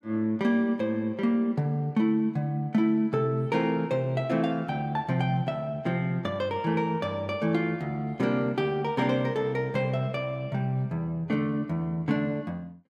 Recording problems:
none

